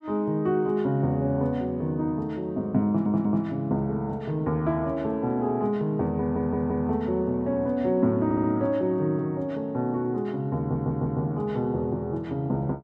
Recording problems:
audio stuttering; 4 times, first at 3 s

